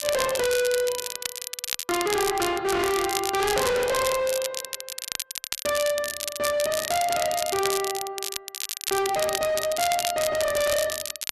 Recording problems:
distorted audio; hard clipping, signal-to-distortion ratio 6 dB
crackling; vinyl, SNR 5 dB

